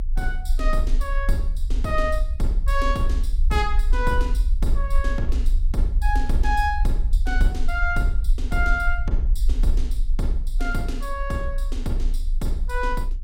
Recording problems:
low-frequency rumble; below 46 Hz, strongest tone 28 Hz, SNR -2 dB

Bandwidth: 16 kHz